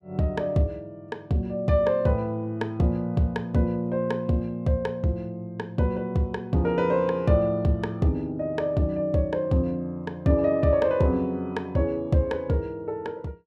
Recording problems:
none

